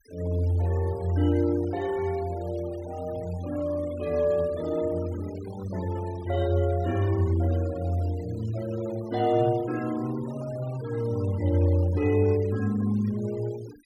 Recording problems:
denoising artefacts; signal-to-artefact ratio 21 dB

